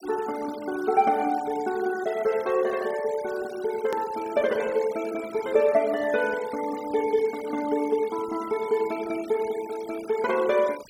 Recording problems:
noise reduction artefacts; signal-to-artefact ratio 18 dB
edit click; at 4 s

